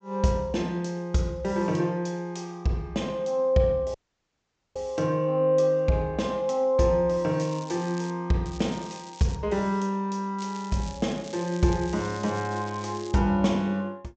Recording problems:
treble missing; nothing above 8 kHz
dropout; at 4 s for 1 s
crackling; at 7.5 s, at 8.5 s and from 10 to 13 s; loose cable, SNR 19 dB

